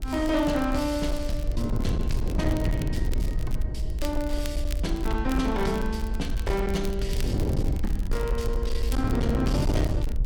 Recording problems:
distortion; hard clipping, signal-to-distortion ratio 10 dB
rumble; below 60 Hz, SNR 2 dB
wind noise; below 250 Hz, SNR 2 dB
crackle; vinyl, SNR 17 dB

